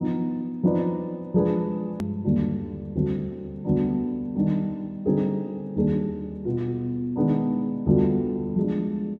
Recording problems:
edit click; at 2 s

